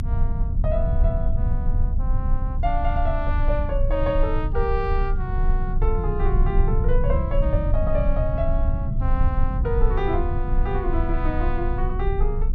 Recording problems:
rumble; below 68 Hz, strongest tone 26 Hz, SNR -3 dB
wind noise; below 72 Hz, SNR 3 dB

